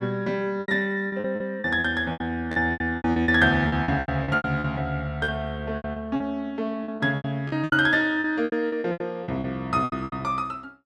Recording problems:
lost packets; 18% of the sound replaced, filled with repeated pitch periods

